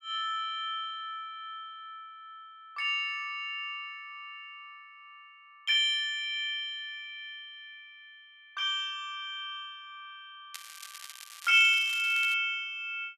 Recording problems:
crackle; from 11 to 12 s; loose cable, SNR 16 dB

